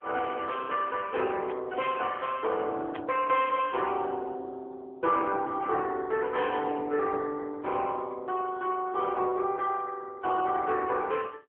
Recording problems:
telephone audio; 260 Hz to 2.9 kHz, AMR-NB
static burst; at 1.5 s and at 3 s; peak -6 dB vs average level

